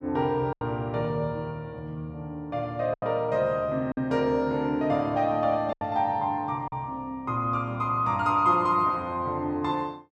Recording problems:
packet loss; 3% of the sound replaced, filled with silence

